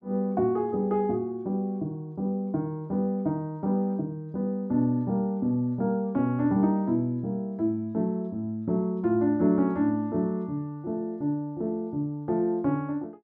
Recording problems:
none

